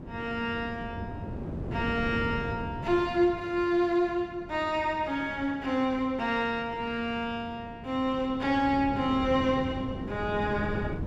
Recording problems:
wind on the microphone; below 320 Hz, SNR 10 dB

